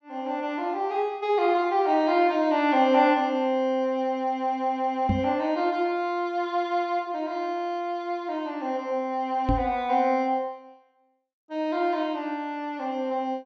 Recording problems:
treble cut off; nothing above 8 kHz
knock on the microphone; at 5 s and at 9.5 s; peak +4 dB vs average level

